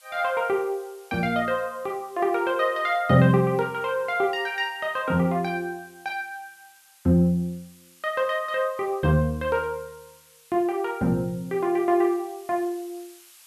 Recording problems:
hiss; SNR 27 dB

